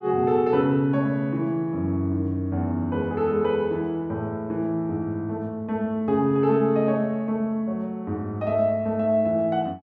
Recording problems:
none

